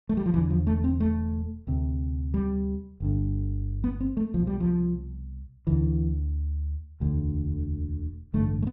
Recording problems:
none

